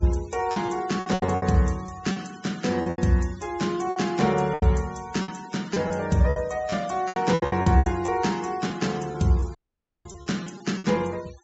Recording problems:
low-pass filter; nothing above 7.6 kHz
denoising artefacts; signal-to-artefact ratio 21 dB
packet loss; 13% of the sound replaced, filled with repeated pitch periods
audio cutting out; at 9.5 s for 0.5 s

